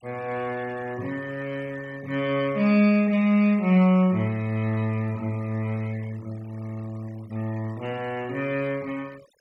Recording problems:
denoising artefacts; signal-to-artefact ratio 24 dB

